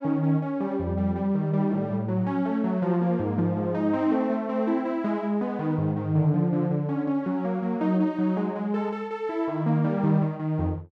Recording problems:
none

